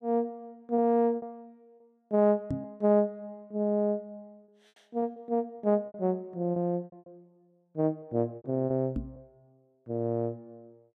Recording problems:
packet loss; 8% of the sound replaced, filled with repeated pitch periods
knock on the microphone; at 2.5 s and at 9 s; peak 0 dB vs average level

